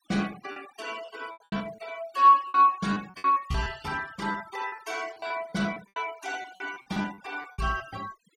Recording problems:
noise reduction artefacts; signal-to-artefact ratio 20 dB
packet loss; 14% of the sound replaced, filled with repeated pitch periods

